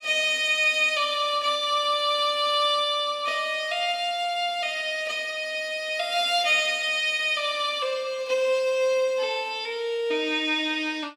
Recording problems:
none

